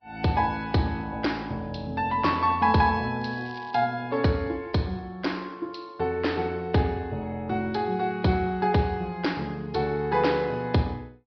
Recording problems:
treble missing; nothing above 5.5 kHz
lossy codec; Vorbis, log-spectral distance 2 dB
crackling; at 3 s; loose cable, SNR 25 dB

